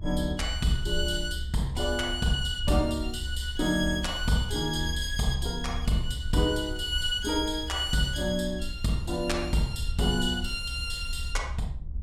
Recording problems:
low-frequency rumble; below 70 Hz, SNR 7 dB

